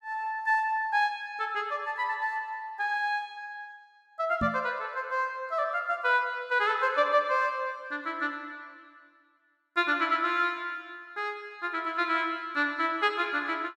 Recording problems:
microphone bump; at 4.5 s; peak +1 dB vs average level

